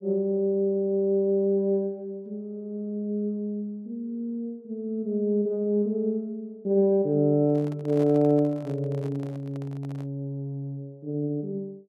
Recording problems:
handling noise; from 7.5 to 10 s; peak -11 dB vs average level

